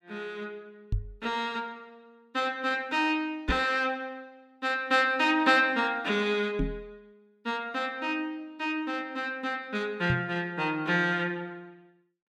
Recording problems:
knock on the microphone; 4 times, first at 1 s; peak +3 dB vs average level

